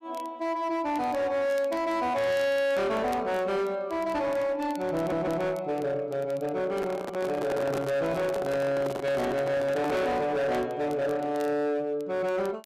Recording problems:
distorted audio; hard clipping, signal-to-distortion ratio 8 dB
crackle; vinyl, SNR 26 dB
audio stuttering; at 5 s
handling noise; from 6.5 to 10 s; peak -1 dB vs average level

